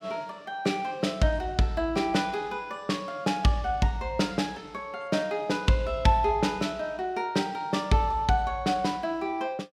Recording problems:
none

